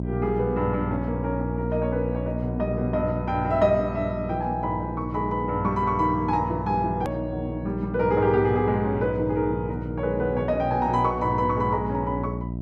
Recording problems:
electrical hum; 60 Hz, harmonics up to 660 Hz, SNR 6 dB
hard cut with a click; at 7 s

